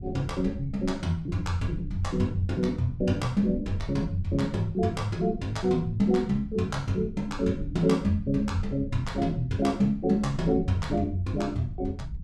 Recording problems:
rumble; below 100 Hz, SNR 12 dB

